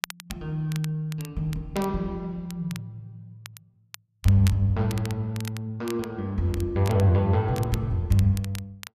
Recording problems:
crackle; vinyl, SNR 17 dB

